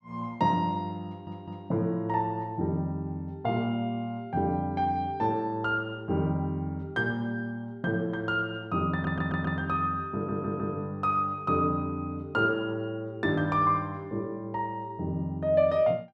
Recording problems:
audio stuttering; at 1 s, at 9 s and at 10 s

